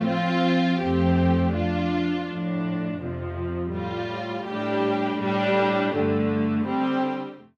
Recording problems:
none

